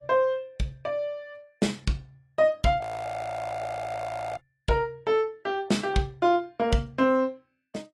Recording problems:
codec artefacts; AAC, log-spectral distance 2 dB
frozen audio; at 3 s for 1.5 s

